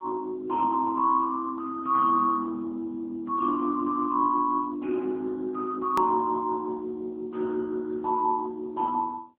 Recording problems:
telephone audio; 240 Hz to 2 kHz, AMR-NB
hard cut with a click; at 6 s

